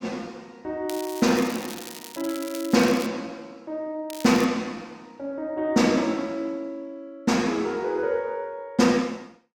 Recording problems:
crackle; from 1 to 3 s and at 4 s; loose cable, SNR 14 dB

